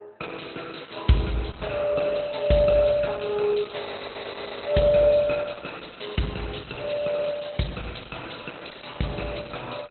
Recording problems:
codec artefacts; Opus, log-spectral distance 10 dB, nothing above 4.1 kHz
frozen audio; at 4 s for 1 s

